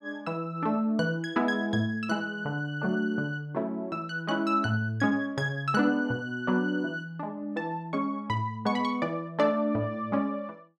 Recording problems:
none

